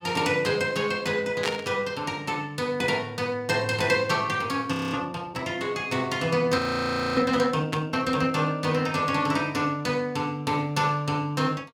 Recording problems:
burst of static; at 1.5 s and at 7.5 s; peak +1 dB vs average level
audio freezing; at 4.5 s and at 6.5 s for 0.5 s

